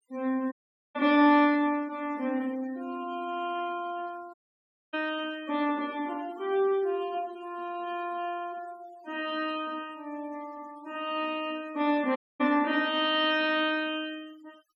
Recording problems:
noise reduction artefacts; signal-to-artefact ratio 24 dB
dropout; at 0.5 s, at 4.5 s for 0.5 s and at 12 s

